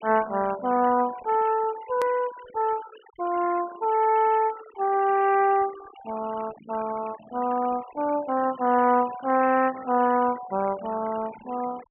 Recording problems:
treble missing; nothing above 3 kHz
denoising artefacts; signal-to-artefact ratio 19 dB
click at an edit; at 2 s

